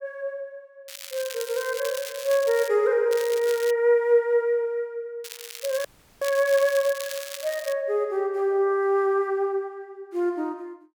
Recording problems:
crackling; from 1 to 2.5 s, at 3 s and from 5 to 7.5 s; loose cable, SNR 13 dB
dropout; at 6 s

